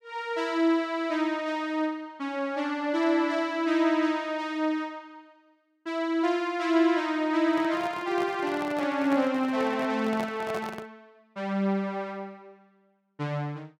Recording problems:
microphone handling noise; from 7.5 to 11 s; peak -5 dB vs average level

